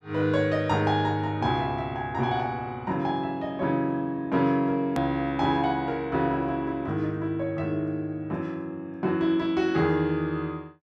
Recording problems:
click at an edit; at 5 s

